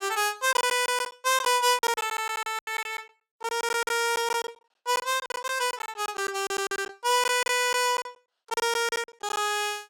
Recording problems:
lost packets; 15% of the sound replaced, filled with silence

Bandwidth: 17 kHz